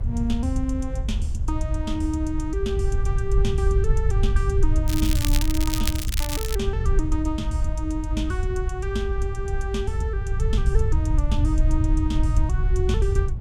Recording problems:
low-frequency rumble; below 78 Hz, SNR -4 dB
wind on the microphone; below 350 Hz, SNR 20 dB
crackling; from 5 to 6.5 s; loose cable, SNR 2 dB

